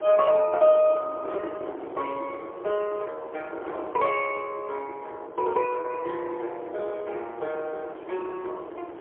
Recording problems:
telephone audio; 300 Hz to 3.9 kHz, AMR-NB, then MP3
wind noise; below 690 Hz, SNR 12 dB
lost packets; 1.1% of the sound replaced, filled with repeated pitch periods

